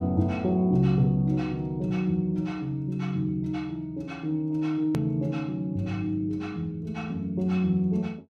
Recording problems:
edit click; at 5 s

